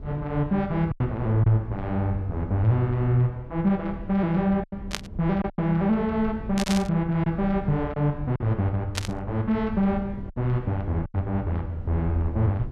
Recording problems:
rumble; below 130 Hz, SNR 13 dB
packet loss; 4% of the sound replaced, filled with silence
burst of static; at 5 s, at 6.5 s and at 9 s; peak +1 dB vs average level

